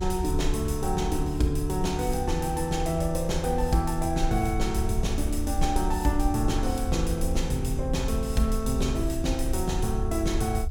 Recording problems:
rumble; below 70 Hz, SNR 4 dB

